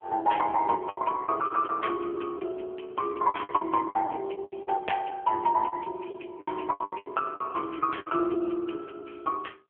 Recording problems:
telephone audio; 280 Hz to 3.3 kHz, AMR-NB
lost packets; 13% of the sound replaced, filled with the last packet

